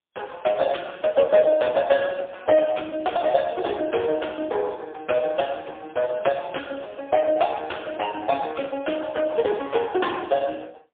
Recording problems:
phone line; 280 Hz to 3.5 kHz, AMR-NB, then MP3

